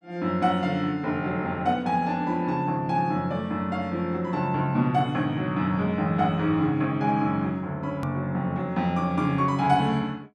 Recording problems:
click at an edit; at 8 s

